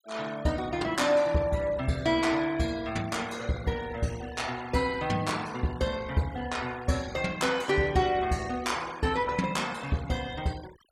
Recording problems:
denoising artefacts; signal-to-artefact ratio 19 dB

